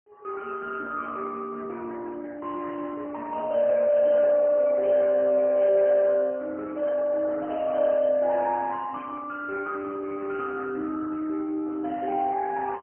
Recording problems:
phone line; 260 Hz to 3.1 kHz, AMR-NB

